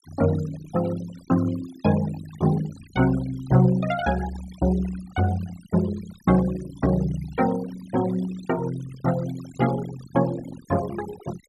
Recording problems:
noise reduction artefacts; signal-to-artefact ratio 16 dB

